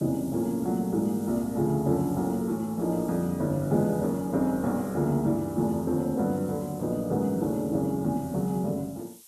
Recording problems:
hiss; SNR 21 dB

